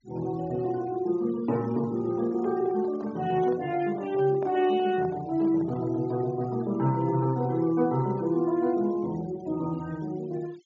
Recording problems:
treble cut off; nothing above 7.4 kHz
denoising artefacts; signal-to-artefact ratio 23 dB
handling noise; from 2 to 6 s; peak -9 dB vs average level

